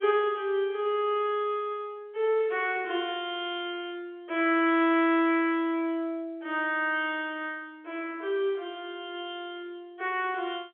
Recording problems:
telephone audio; 260 Hz to 3.4 kHz, G.711

